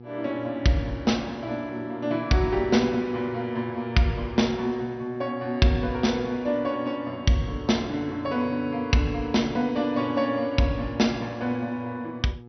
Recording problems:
treble missing; nothing above 5.9 kHz
electrical hum; 60 Hz, harmonics up to 960 Hz, SNR 18 dB

